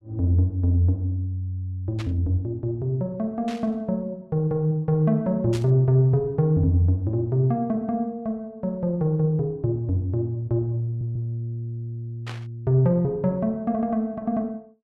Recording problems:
static burst; 4 times, first at 2 s; peak -9 dB vs average level
stutter; at 11 s

